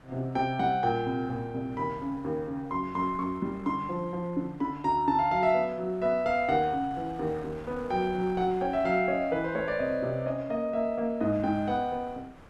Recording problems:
wind on the microphone; below 1.3 kHz, SNR 22 dB

